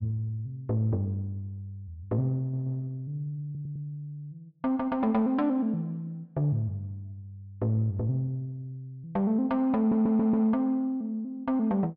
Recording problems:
treble cut off; nothing above 5.4 kHz
audio stuttering; at 2.5 s, at 3.5 s and at 10 s

